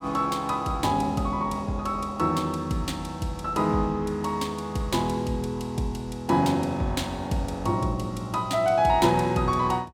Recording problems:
none

